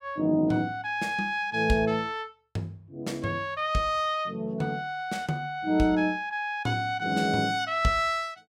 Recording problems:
none

